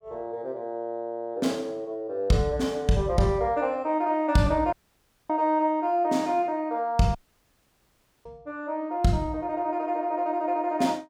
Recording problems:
dropout; at 4.5 s for 0.5 s and at 7 s for 1 s

